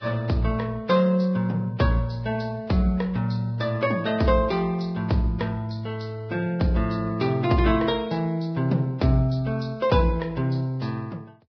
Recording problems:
codec artefacts; Vorbis, log-spectral distance 2 dB, nothing above 5.2 kHz

